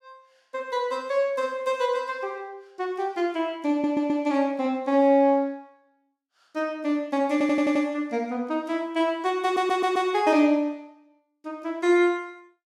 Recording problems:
stutter; at 3.5 s, at 7.5 s and at 9.5 s

